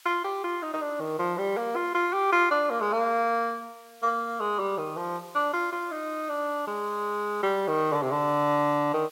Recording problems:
background hiss; SNR 25 dB

